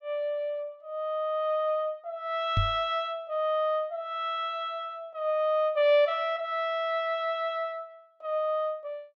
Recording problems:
microphone thump; at 2.5 s; peak +5 dB vs average level

